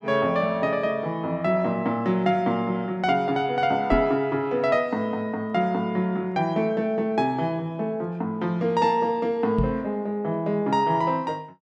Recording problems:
microphone thump; at 4 s and at 9.5 s; peak +2 dB vs average level

